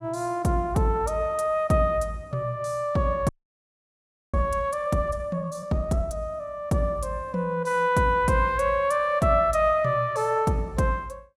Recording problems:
audio freezing; at 3.5 s for 1 s

